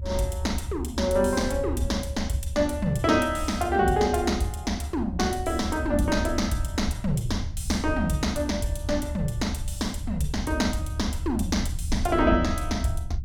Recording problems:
rumble; below 78 Hz, SNR 7 dB

